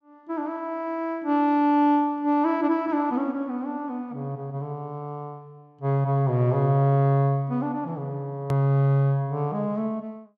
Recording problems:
click at an edit; at 8.5 s

